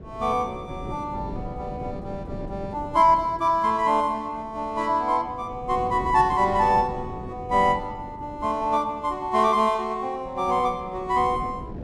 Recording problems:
wind noise; below 330 Hz, SNR 15 dB

